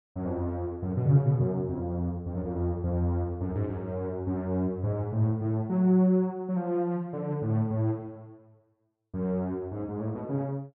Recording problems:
none

